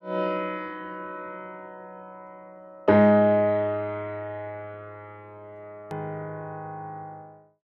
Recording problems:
edit click; at 6 s

